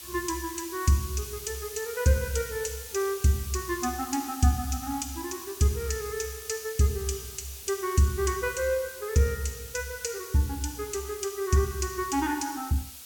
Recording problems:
hiss; slope +2 dB per octave, SNR 12 dB

